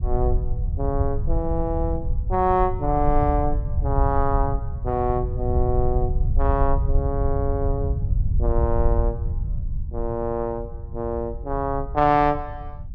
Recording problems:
low-frequency rumble; below 84 Hz, SNR 2 dB

